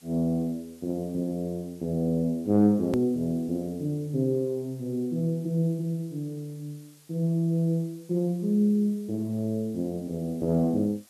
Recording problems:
hiss; slope 0 dB per octave, SNR 28 dB
click at an edit; at 3 s

